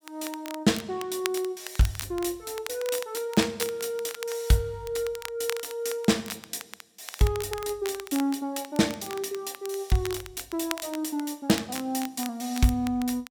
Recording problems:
crackle; vinyl, SNR 11 dB

